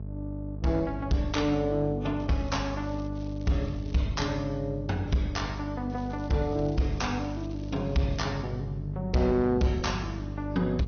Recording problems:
treble cut off; nothing above 6.3 kHz
codec artefacts; AAC, log-spectral distance 2 dB
distortion; soft clipping, signal-to-distortion ratio 11 dB
mains hum; 50 Hz, harmonics up to 450 Hz, SNR 7 dB
crackling; at 2 s, at 3 s and from 6 to 8.5 s; loose cable, SNR 26 dB

